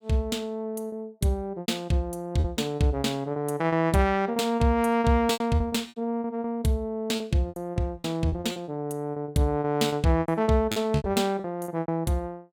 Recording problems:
packet loss; 14% of the sound replaced, filled with repeated pitch periods

